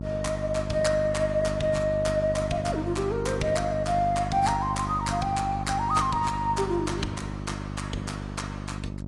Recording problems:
lossy compression; AAC, log-spectral distance 3 dB, nothing above 10.4 kHz
electrical hum; 50 Hz, harmonics up to 700 Hz, SNR 7 dB

